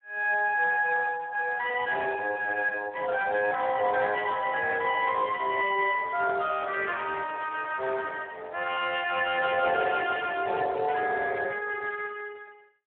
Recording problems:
phone line; 320 Hz to 3.1 kHz, Speex

